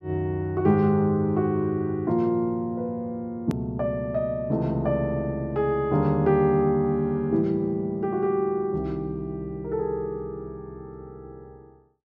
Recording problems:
edit click; at 3.5 s

